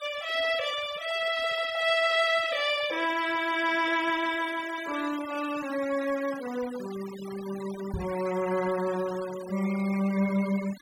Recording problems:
denoising artefacts; signal-to-artefact ratio 16 dB
knock on the microphone; at 8 s; peak -2 dB vs average level

